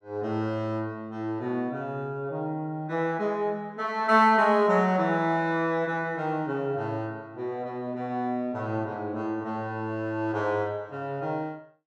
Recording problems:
none

